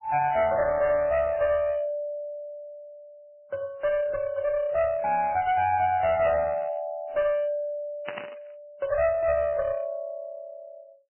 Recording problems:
codec artefacts; MP3, then MP3, log-spectral distance 2 dB, nothing above 2.7 kHz
distorted audio; hard clipping, uneven, signal-to-distortion ratio 10 dB
burst of static; at 8 s; peak -4 dB vs average level

